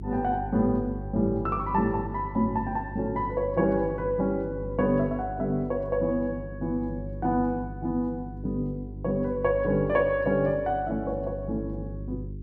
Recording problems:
hum; 50 Hz, harmonics up to 400 Hz, SNR 11 dB

